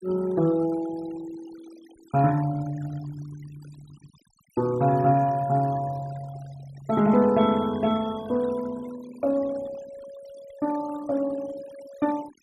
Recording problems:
noise reduction artefacts; signal-to-artefact ratio 20 dB

